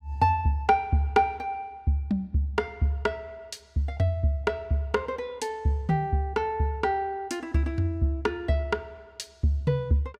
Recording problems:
none

